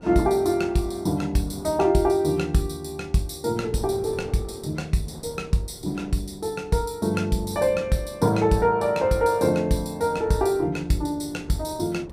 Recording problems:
wind noise; below 500 Hz, SNR 21 dB

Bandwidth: 15.5 kHz